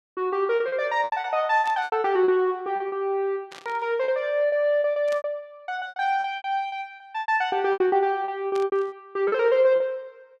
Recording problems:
lost packets; 16% of the sound replaced, filled with repeated pitch periods
static burst; 4 times, first at 1.5 s; peak -12 dB vs average level

